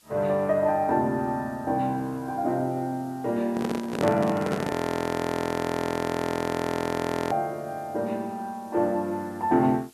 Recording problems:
hiss; SNR 27 dB
handling noise; from 3.5 to 4.5 s; peak +3 dB vs average level
audio freezing; at 4.5 s for 2.5 s

